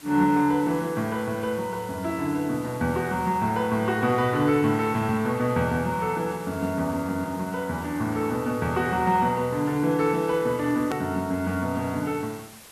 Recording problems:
background hiss; slope -1 dB per octave, SNR 20 dB
hard cut with a click; at 11 s

